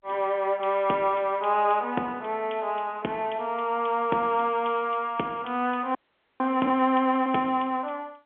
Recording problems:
telephone audio; 260 Hz to 3.4 kHz, G.711
frozen audio; at 6 s

